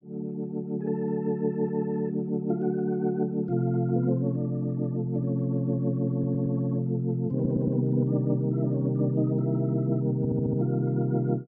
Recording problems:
audio stuttering; at 6 s, at 7.5 s and at 10 s

